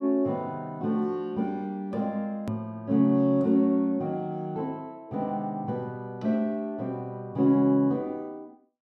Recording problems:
hard cut with a click; at 2.5 s

